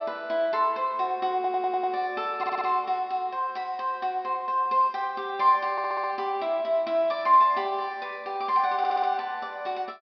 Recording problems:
treble missing; nothing above 5.5 kHz
audio stuttering; 4 times, first at 1.5 s

